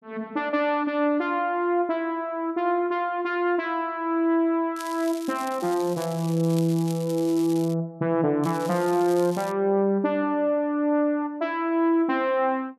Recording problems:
crackling; from 5 to 7.5 s and from 8.5 to 9.5 s; loose cable, SNR 18 dB

